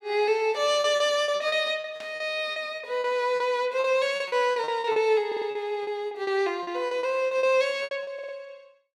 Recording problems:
lost packets; 15% of the sound replaced, filled with repeated pitch periods
burst of static; at 2 s; peak -14 dB vs average level
audio stuttering; at 5.5 s and at 8 s

